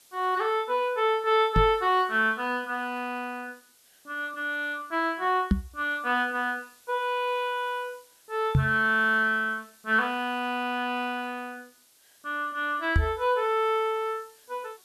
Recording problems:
hiss; slope +1 dB per octave, SNR 29 dB
microphone bump; 4 times, first at 1.5 s; peak +7 dB vs average level

